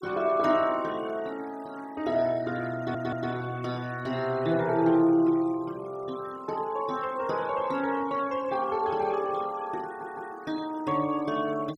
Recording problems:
denoising artefacts; signal-to-artefact ratio 20 dB
audio stuttering; at 3 s and at 10 s

